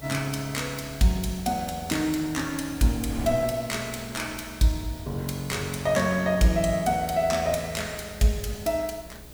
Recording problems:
hum; 60 Hz, harmonics up to 660 Hz, SNR 24 dB
hiss; slope 0 dB per octave, SNR 20 dB
wind noise; below 380 Hz, SNR 20 dB

